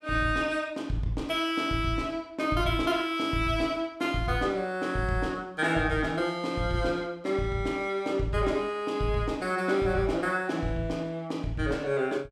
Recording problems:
none

